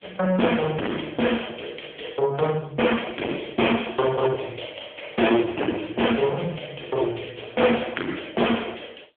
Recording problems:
phone line; 190 Hz to 3.4 kHz, AMR-NB
distortion; hard clipping, signal-to-distortion ratio 8 dB

